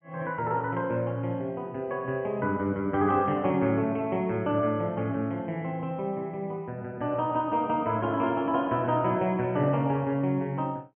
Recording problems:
treble missing; nothing above 3.2 kHz

